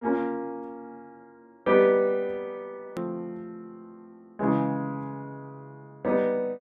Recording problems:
edit click; at 3 s

